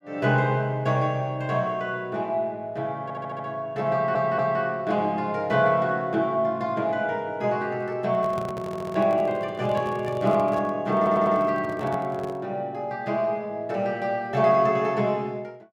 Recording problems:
stutter; 4 times, first at 3 s
microphone handling noise; from 8 to 12 s; peak -6 dB vs average level

